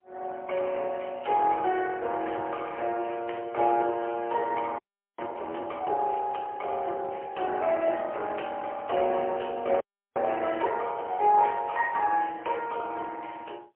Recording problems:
phone line; 320 Hz to 3.1 kHz, AMR-NB, then MP3
frozen audio; at 5 s and at 10 s

